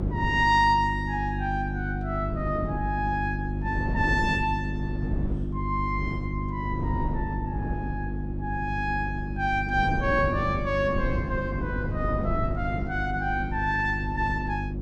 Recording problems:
hum; 50 Hz, harmonics up to 350 Hz, SNR 4 dB
wind noise; below 240 Hz, SNR 8 dB

